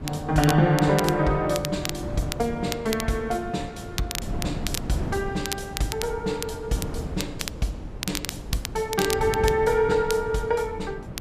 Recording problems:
wind noise; below 280 Hz, SNR 10 dB
crackle; vinyl, SNR 9 dB

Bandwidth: 14.5 kHz